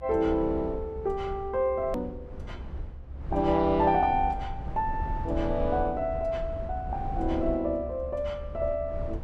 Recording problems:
rumble; below 94 Hz, SNR 9 dB
edit click; at 2 s

